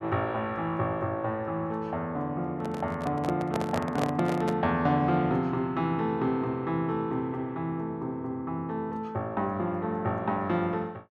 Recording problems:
handling noise; from 2.5 to 4.5 s; peak +3 dB vs average level

